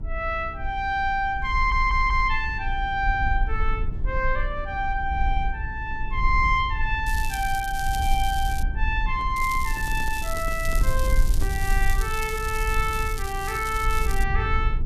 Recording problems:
hum; 60 Hz, harmonics up to 420 Hz, SNR 20 dB
low-frequency rumble; below 54 Hz, SNR 4 dB
stutter; at 1.5 s
crackling; from 7 to 8.5 s and from 9.5 to 14 s; loose cable, SNR 12 dB
microphone handling noise; from 9 to 12 s; peak -7 dB vs average level

